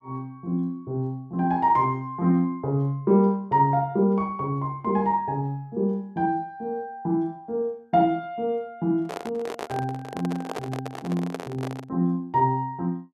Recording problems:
microphone handling noise; from 9 to 12 s; peak -3 dB vs average level

